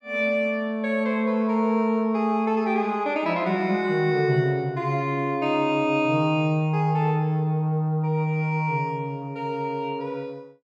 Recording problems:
none

